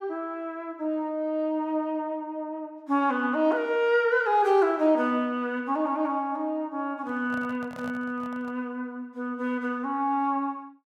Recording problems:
handling noise; from 7 to 8.5 s; peak -11 dB vs average level

